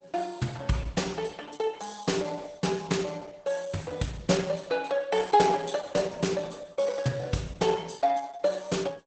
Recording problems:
lossy codec; Opus, log-spectral distance 5 dB, nothing above 8 kHz

